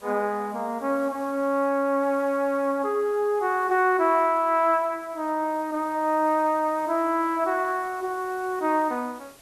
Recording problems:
background hiss; slope -3 dB per octave, SNR 26 dB

